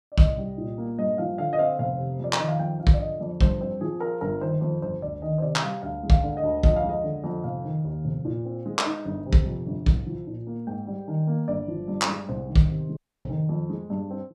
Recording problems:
audio cutting out; at 13 s

